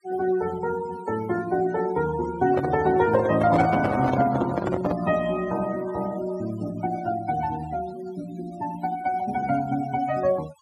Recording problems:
noise reduction artefacts; signal-to-artefact ratio 16 dB
microphone handling noise; from 2.5 to 5 s; peak +3 dB vs average level

